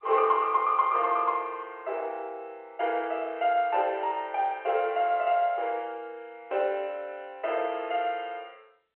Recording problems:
telephone audio; 340 Hz to 3.2 kHz, G.711

